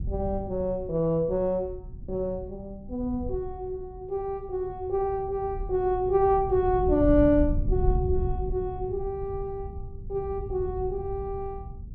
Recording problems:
low-frequency rumble; below 100 Hz, SNR 8 dB

